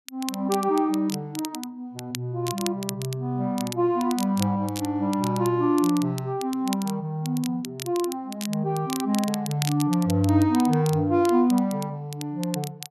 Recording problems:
crackling; vinyl, SNR 13 dB

